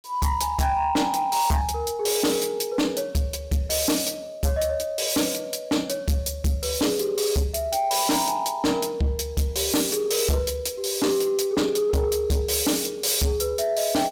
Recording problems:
distorted audio; soft clipping, signal-to-distortion ratio 8 dB

